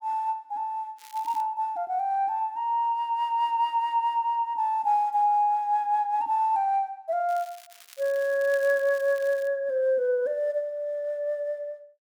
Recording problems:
crackle; at 1 s and from 7.5 to 9.5 s; loose cable, SNR 23 dB

